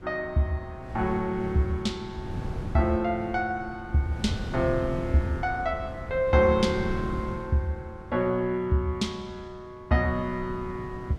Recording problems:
wind on the microphone; below 220 Hz, SNR 10 dB

